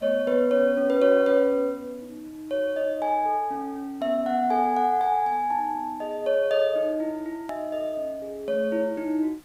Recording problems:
hiss; slope -3 dB per octave, SNR 30 dB
hard cut with a click; at 7.5 s

